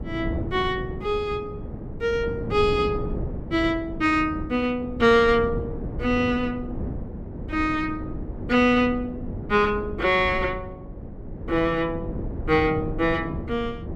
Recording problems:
wind noise; below 270 Hz, SNR 10 dB

